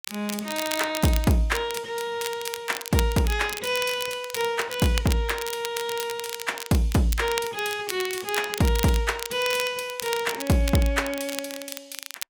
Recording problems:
crackle; vinyl, SNR 9 dB

